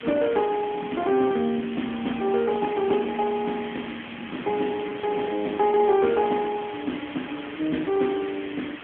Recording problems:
telephone audio; 190 Hz to 3.3 kHz, AMR-NB
hiss; SNR 14 dB
wind on the microphone; below 330 Hz, SNR 17 dB

